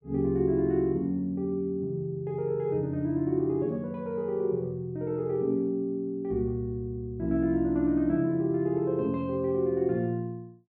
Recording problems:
none

